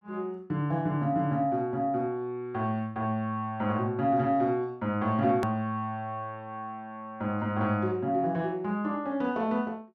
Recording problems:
click at an edit; at 5.5 s

